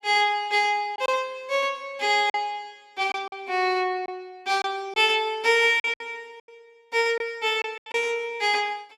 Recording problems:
packet loss; 6% of the sound replaced, filled with silence

